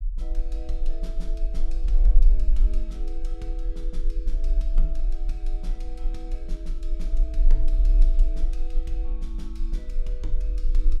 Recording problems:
rumble; below 36 Hz, strongest tone 24 Hz, SNR -15 dB

